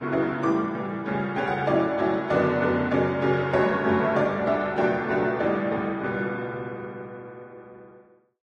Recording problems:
lossy codec; Vorbis, log-spectral distance 2 dB

